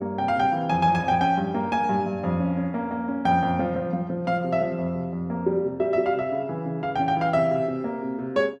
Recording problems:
none

